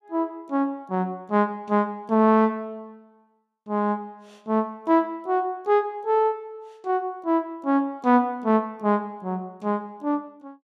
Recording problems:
none

